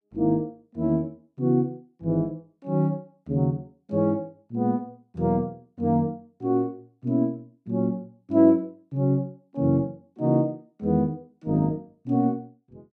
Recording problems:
none

